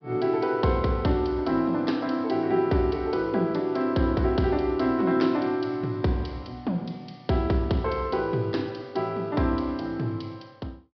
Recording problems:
treble missing; nothing above 5.5 kHz

